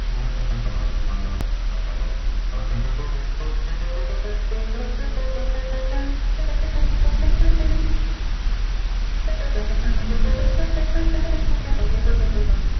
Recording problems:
codec artefacts; MP2, log-spectral distance 2 dB, nothing above 6 kHz
hum; 50 Hz, harmonics up to 400 Hz, SNR 20 dB
hiss; slope -1 dB per octave, SNR 3 dB
low-frequency rumble; below 46 Hz, strongest tone 40 Hz, SNR -9 dB
hard cut with a click; at 1.5 s

